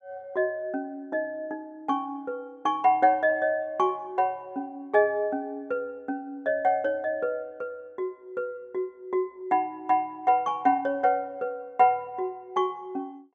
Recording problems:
none

